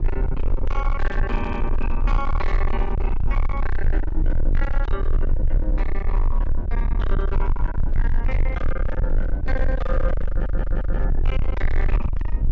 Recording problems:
treble cut off; nothing above 8 kHz
distortion; hard clipping, signal-to-distortion ratio 6 dB
low-frequency rumble; below 44 Hz, strongest tone 18 Hz, SNR -6 dB
wind noise; below 310 Hz, SNR 5 dB
stutter; at 1.5 s and at 10 s

